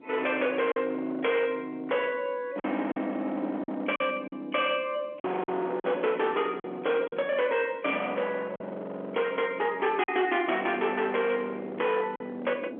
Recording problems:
phone line; 220 Hz to 3.4 kHz, G.711
distorted audio; hard clipping, signal-to-distortion ratio 10 dB
wind on the microphone; below 690 Hz, SNR 20 dB
packet loss; 4% of the sound replaced, filled with silence

